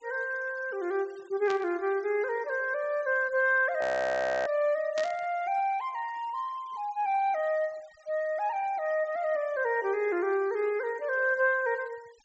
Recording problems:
treble cut off; nothing above 8 kHz
denoising artefacts; signal-to-artefact ratio 27 dB
static burst; at 1.5 s and at 5 s; peak -5 dB vs average level
audio freezing; at 4 s for 0.5 s

